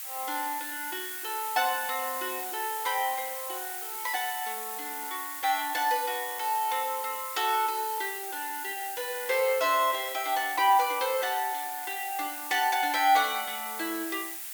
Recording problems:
background hiss; SNR 6 dB

